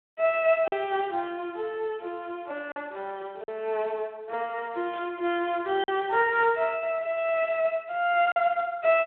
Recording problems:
telephone audio; 340 Hz to 3.7 kHz, Speex
packet loss; 2% of the sound replaced, filled with silence
burst of static; at 5 s and at 6.5 s; peak -15 dB vs average level

